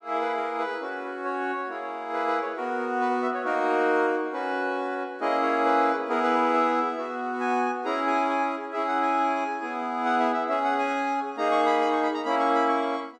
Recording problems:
none

